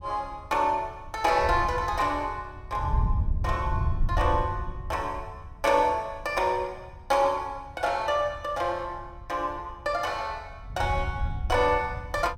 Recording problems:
wind noise; below 94 Hz, SNR 5 dB

